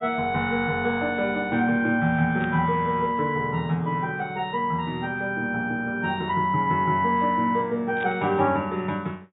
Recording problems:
low-pass filter; nothing above 4 kHz
static burst; at 2.5 s and at 8 s; peak -11 dB vs average level

